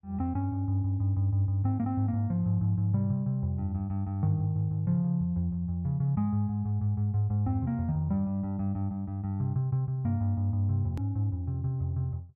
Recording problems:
edit click; at 11 s

